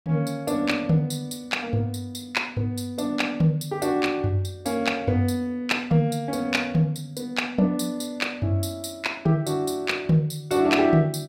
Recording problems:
none

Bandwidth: 16 kHz